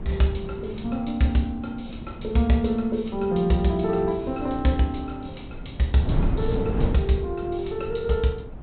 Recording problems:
treble cut off; nothing above 4 kHz
wind noise; below 200 Hz, SNR 8 dB

